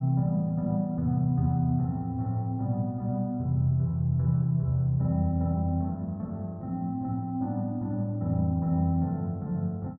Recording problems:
none

